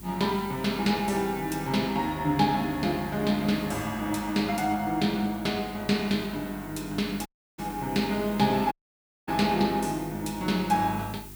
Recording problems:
hum; 50 Hz, harmonics up to 400 Hz, SNR 19 dB
hiss; SNR 19 dB
dropout; at 7.5 s and at 8.5 s for 0.5 s

